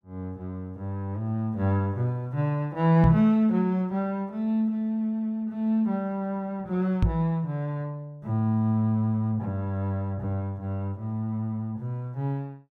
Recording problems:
microphone bump; at 3 s and at 7 s; peak +8 dB vs average level

